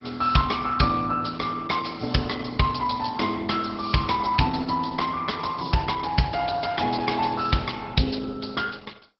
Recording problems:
codec artefacts; MP2, then Opus, log-spectral distance 6 dB, nothing above 5.3 kHz

